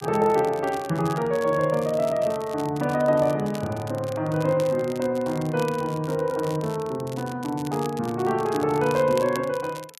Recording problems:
crackling; vinyl, SNR 19 dB

